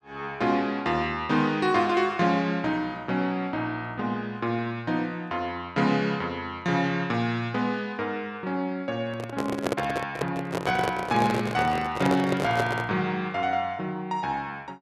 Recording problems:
handling noise; from 9 to 13 s; peak +4 dB vs average level

